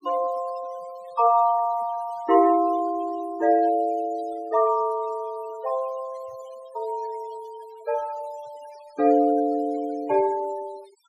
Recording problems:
denoising artefacts; signal-to-artefact ratio 23 dB

